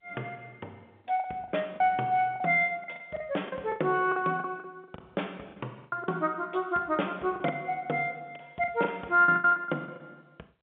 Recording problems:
telephone audio; 240 Hz to 3.6 kHz, G.711
lost packets; 12% of the sound replaced, filled with the last packet

